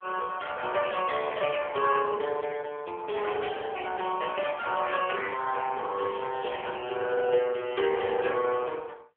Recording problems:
telephone audio; 340 Hz to 3.1 kHz, AMR-NB

